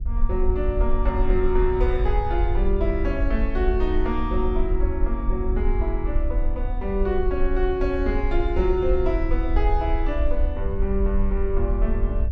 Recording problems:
rumble; below 52 Hz, SNR 0 dB

